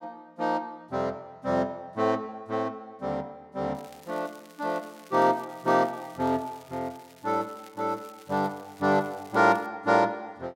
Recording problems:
crackling; from 4 to 9.5 s; loose cable, SNR 25 dB

